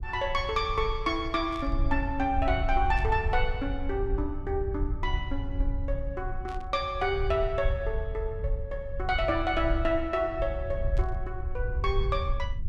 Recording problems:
low-frequency rumble; below 70 Hz, SNR 4 dB
burst of static; 4 times, first at 1.5 s; peak -13 dB vs average level

